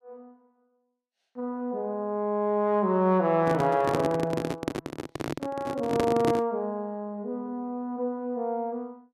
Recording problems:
microphone handling noise; from 3.5 to 6.5 s; peak +4 dB vs average level

